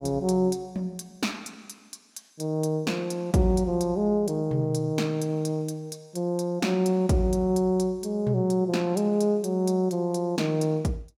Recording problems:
none

